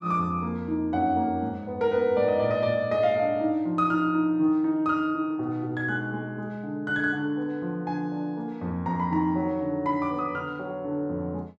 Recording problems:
none

